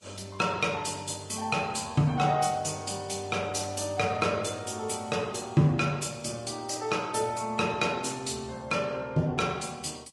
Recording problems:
lossy compression; Vorbis, log-spectral distance 5 dB, nothing above 10.7 kHz

